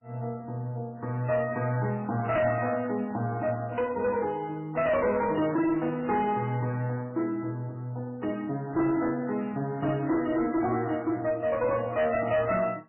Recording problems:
lossy codec; MP3, log-spectral distance 3 dB, nothing above 2.8 kHz
distortion; hard clipping, signal-to-distortion ratio 11 dB

